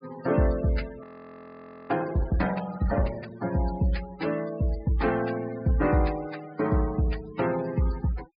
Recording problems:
low-pass filter; nothing above 4.9 kHz
noise reduction artefacts; signal-to-artefact ratio 15 dB
frozen audio; at 1 s for 1 s

